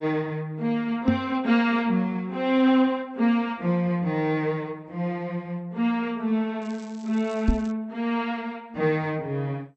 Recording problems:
lossy codec; MP2, log-spectral distance 2 dB
microphone thump; at 1 s and at 7.5 s; peak +8 dB vs average level
crackle; from 6.5 to 7.5 s; loose cable, SNR 26 dB

